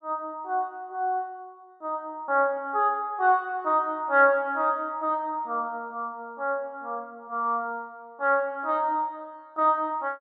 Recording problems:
none

